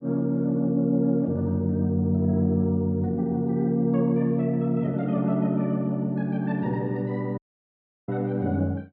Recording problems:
audio cutting out; at 7.5 s for 0.5 s

